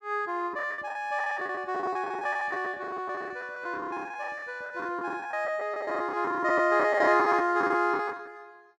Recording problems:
lost packets; 17% of the sound replaced, filled with the last packet

